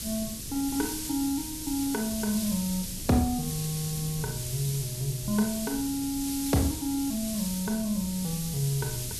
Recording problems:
background hiss; SNR 5 dB
wind on the microphone; below 200 Hz, SNR 14 dB

